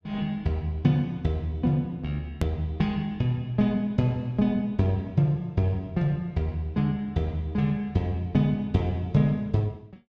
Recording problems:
click at an edit; at 2.5 s

